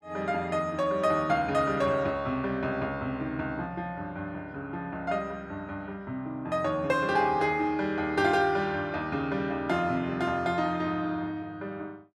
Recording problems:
none

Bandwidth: 13.5 kHz